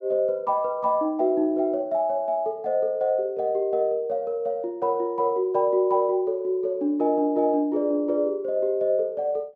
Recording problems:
none

